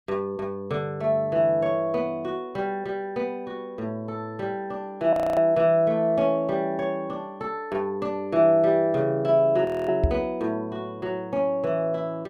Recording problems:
frozen audio; at 5 s and at 9.5 s
microphone thump; at 10 s; peak +6 dB vs average level

